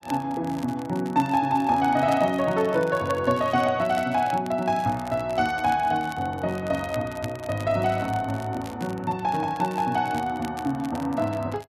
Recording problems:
crackling; vinyl, SNR 21 dB

